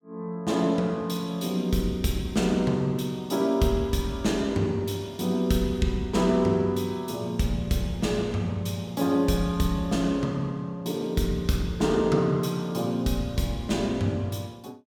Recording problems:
none

